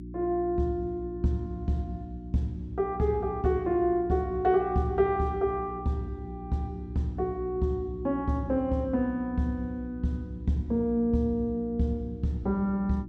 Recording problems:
electrical hum; 60 Hz, harmonics up to 360 Hz, SNR 12 dB

